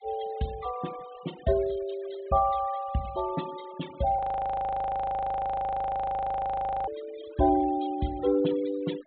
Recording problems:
treble cut off; nothing above 4 kHz
noise reduction artefacts; signal-to-artefact ratio 19 dB
audio freezing; at 4 s for 2.5 s

